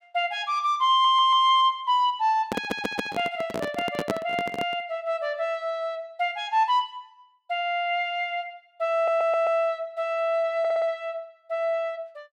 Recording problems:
stutter; 4 times, first at 1 s
handling noise; from 2.5 to 5 s; peak +2 dB vs average level

